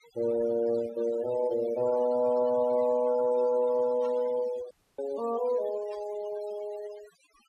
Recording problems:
noise reduction artefacts; signal-to-artefact ratio 17 dB
burst of static; at 4 s and at 6 s; peak -21 dB vs average level
audio cutting out; at 4.5 s

